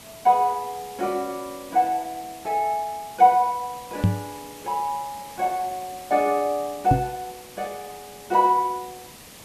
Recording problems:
background hiss; slope -2 dB per octave, SNR 18 dB
microphone thump; at 4 s and at 7 s; peak +8 dB vs average level

